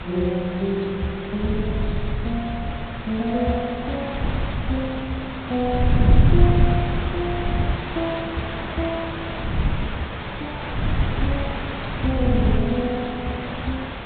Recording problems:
treble missing; nothing above 3.9 kHz
lossy codec; MP3, then G.722, log-spectral distance 6 dB
background hiss; SNR 4 dB
wind noise; below 140 Hz, SNR -3 dB

